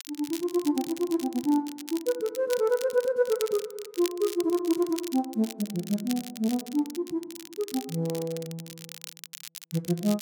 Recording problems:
crackle; vinyl, SNR 13 dB

